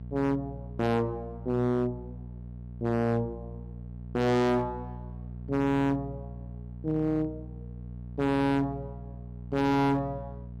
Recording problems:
distortion; hard clipping, signal-to-distortion ratio 6 dB
hum; 60 Hz, harmonics up to 480 Hz, SNR 13 dB

